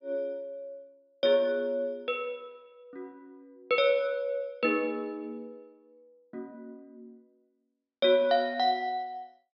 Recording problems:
treble missing; nothing above 5.5 kHz

